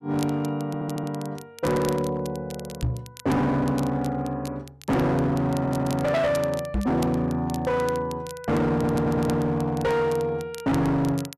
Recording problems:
distortion; hard clipping, signal-to-distortion ratio 7 dB
crackling; vinyl, SNR 19 dB
stutter; at 0.5 s, at 5.5 s and at 8.5 s
knock on the microphone; at 3 s and at 6.5 s; peak +2 dB vs average level

